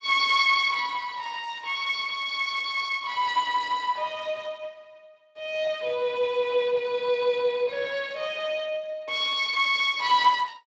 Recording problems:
lossy codec; Speex, log-spectral distance 4 dB, nothing above 7.3 kHz

